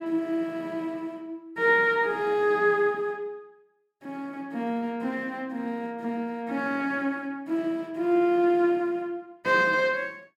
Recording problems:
none

